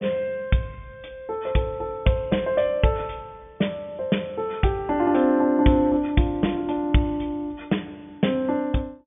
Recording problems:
treble cut off; nothing above 3.6 kHz

